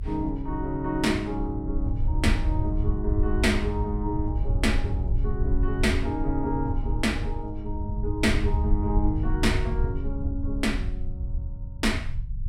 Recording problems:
rumble; below 80 Hz, SNR 1 dB

